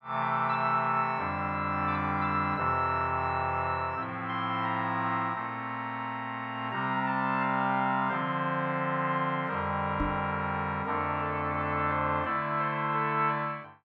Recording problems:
microphone thump; at 10 s; peak 0 dB vs average level

